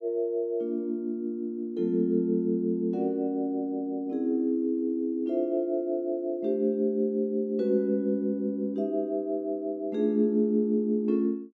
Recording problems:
none

